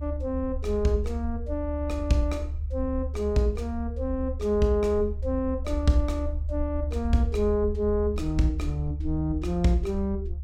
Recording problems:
low-frequency rumble; below 74 Hz, strongest tone 72 Hz, SNR 5 dB

